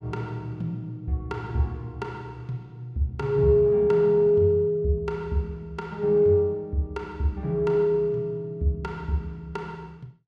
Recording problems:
none

